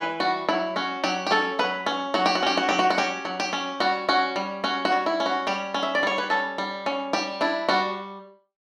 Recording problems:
none

